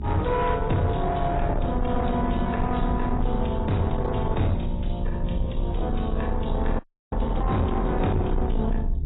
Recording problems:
lossy compression; AAC, then AAC, log-spectral distance 3 dB, nothing above 3.8 kHz
distortion; soft clipping, signal-to-distortion ratio 10 dB
hum; 50 Hz, harmonics up to 400 Hz, SNR 10 dB
low-frequency rumble; below 88 Hz, SNR 3 dB
frozen audio; at 7 s

